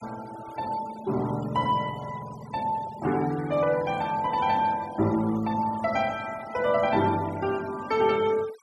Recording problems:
denoising artefacts; signal-to-artefact ratio 18 dB

